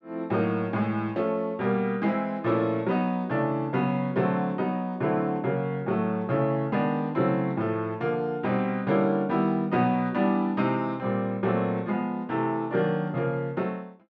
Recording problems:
none

